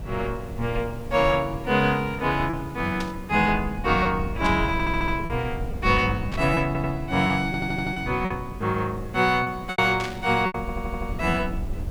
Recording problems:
background hiss; slope -6 dB per octave, SNR 21 dB
rumble; below 120 Hz, SNR 11 dB
lost packets; 4% of the sound replaced, filled with repeated pitch periods
burst of static; 4 times, first at 3 s; peak -5 dB vs average level
audio stuttering; 4 times, first at 4.5 s

